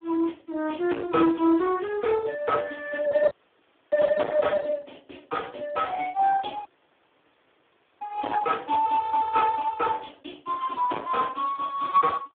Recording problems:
telephone audio; 240 Hz to 3.6 kHz, Speex
distortion; hard clipping, uneven, signal-to-distortion ratio 7 dB
audio cutting out; at 3.5 s for 0.5 s and at 6.5 s for 1.5 s

